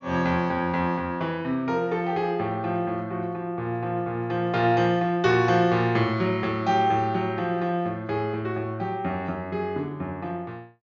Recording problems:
treble cut off; nothing above 7.1 kHz

